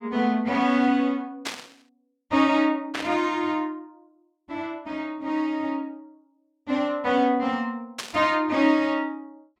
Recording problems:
static burst; at 1.5 s, at 3 s and at 8 s; peak -2 dB vs average level

